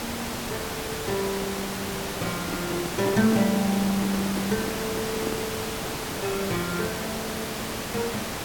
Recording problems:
hiss; slope -4 dB per octave, SNR 1 dB
crackle; vinyl, SNR 25 dB
microphone handling noise; from 2 to 5.5 s; peak +1 dB vs average level

